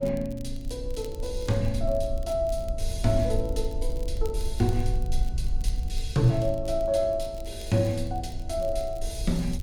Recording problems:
rumble; below 52 Hz, SNR 6 dB
crackling; vinyl, SNR 25 dB

